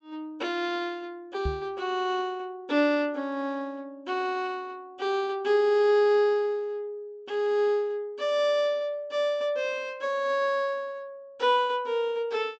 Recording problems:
treble missing; nothing above 8 kHz
microphone bump; at 1.5 s; peak -1 dB vs average level

